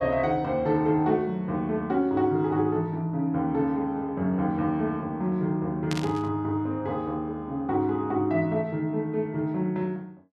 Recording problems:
burst of static; at 6 s; peak -2 dB vs average level

